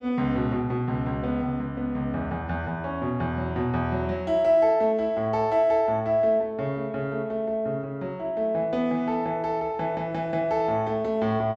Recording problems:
none

